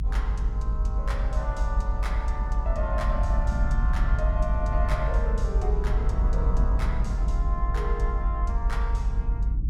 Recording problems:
rumble; below 54 Hz, SNR -8 dB

